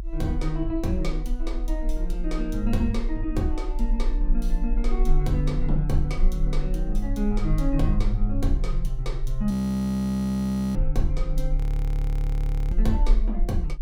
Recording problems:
low-frequency rumble; below 38 Hz, strongest tone 24 Hz, SNR 1 dB
frozen audio; at 9.5 s for 1 s and at 12 s for 1 s

